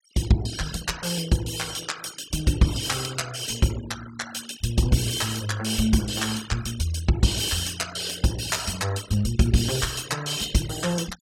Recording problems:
denoising artefacts; signal-to-artefact ratio 15 dB

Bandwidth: 16.5 kHz